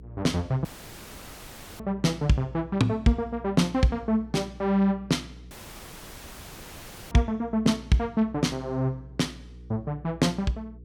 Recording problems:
hum; 60 Hz, harmonics up to 480 Hz, SNR 20 dB
dropout; at 0.5 s for 1 s and at 5.5 s for 1.5 s

